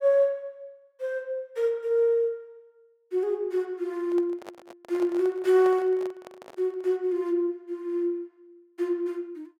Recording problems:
handling noise; from 4 to 7 s; peak -9 dB vs average level

